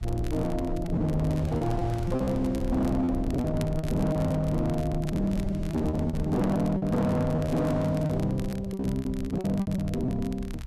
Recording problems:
distorted audio; hard clipping, signal-to-distortion ratio 10 dB
low-frequency rumble; below 94 Hz, SNR 10 dB
wind noise; below 2 kHz, SNR 26 dB
crackle; vinyl, SNR 21 dB
lost packets; 12% of the sound replaced, filled with repeated pitch periods

